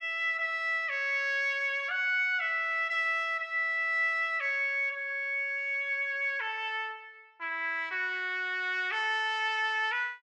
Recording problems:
none

